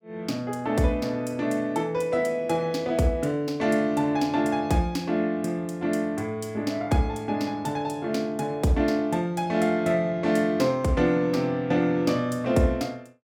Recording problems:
none

